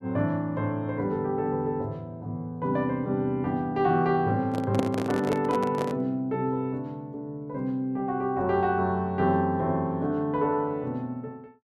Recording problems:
handling noise; from 4.5 to 6 s; peak +3 dB vs average level

